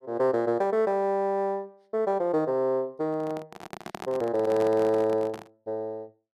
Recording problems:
microphone handling noise; from 3 to 5.5 s; peak -6 dB vs average level

